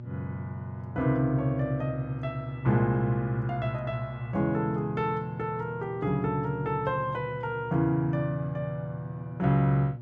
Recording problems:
electrical hum; 60 Hz, harmonics up to 600 Hz, SNR 12 dB

